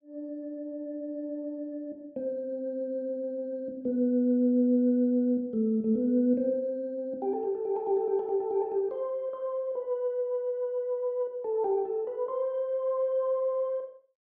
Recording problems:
none

